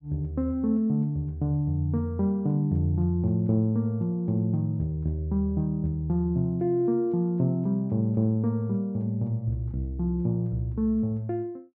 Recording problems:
none

